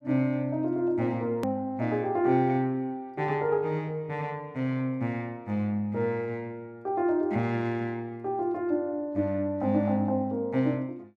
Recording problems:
hard cut with a click; at 1.5 s

